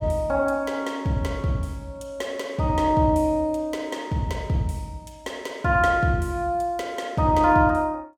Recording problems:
none

